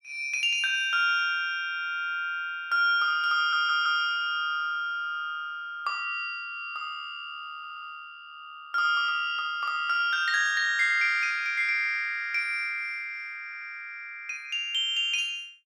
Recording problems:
audio stuttering; at 3.5 s, at 7.5 s and at 13 s

